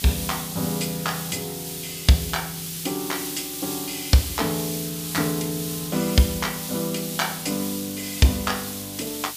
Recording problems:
mains hum; 50 Hz, harmonics up to 1.3 kHz, SNR 25 dB
background hiss; SNR 5 dB

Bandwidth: 15 kHz